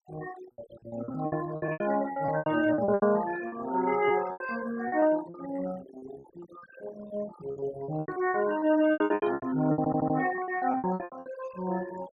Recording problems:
denoising artefacts; signal-to-artefact ratio 17 dB
packet loss; 18% of the sound replaced, filled with repeated pitch periods
audio stuttering; at 10 s

